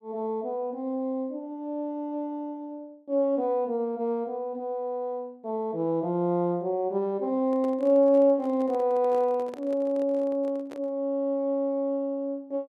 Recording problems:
handling noise; from 7.5 to 11 s; peak -11 dB vs average level

